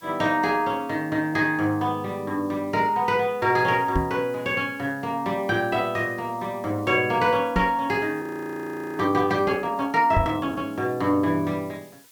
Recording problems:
hiss; slope +1 dB per octave, SNR 28 dB
knock on the microphone; at 4 s, at 7.5 s and at 10 s; peak +3 dB vs average level
audio freezing; at 8 s for 1 s

